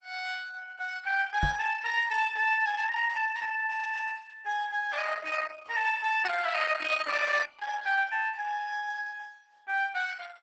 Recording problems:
codec artefacts; Opus, log-spectral distance 5 dB, nothing above 8 kHz
microphone thump; at 1.5 s; peak +2 dB vs average level

